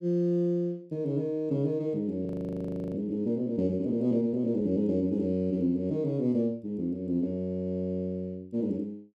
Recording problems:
audio freezing; at 2.5 s for 0.5 s

